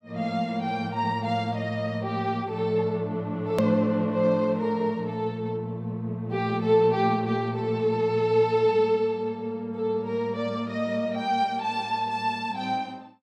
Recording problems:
hard cut with a click; at 3.5 s

